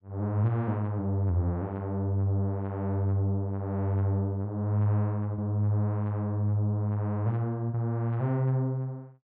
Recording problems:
none

